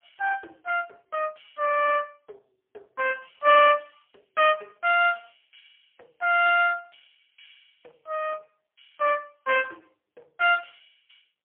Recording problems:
phone line; 370 Hz to 3.1 kHz, AMR-NB, then MP3

